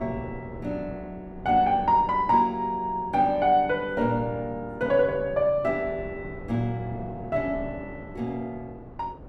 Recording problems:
wind on the microphone; below 430 Hz, SNR 17 dB

